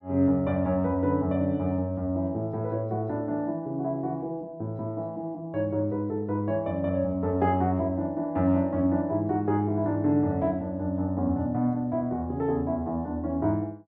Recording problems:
none

